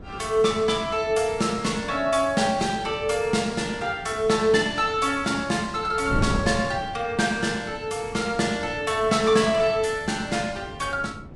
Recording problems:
lossy codec; Vorbis, log-spectral distance 3 dB, nothing above 10.7 kHz
wind noise; below 280 Hz, SNR 14 dB

